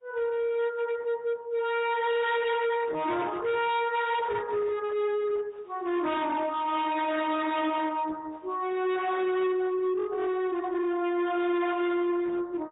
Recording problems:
treble cut off; nothing above 3.7 kHz
lossy compression; Opus, then MP3, log-spectral distance 3 dB
distorted audio; hard clipping, signal-to-distortion ratio 6 dB

